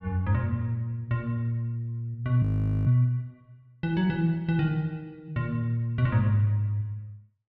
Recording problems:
frozen audio; at 2.5 s

